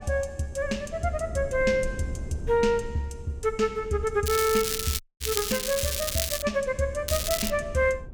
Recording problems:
rumble; below 130 Hz, SNR 14 dB
crackle; from 4.5 to 6.5 s and at 7 s; loose cable, SNR 2 dB
dropout; at 5 s

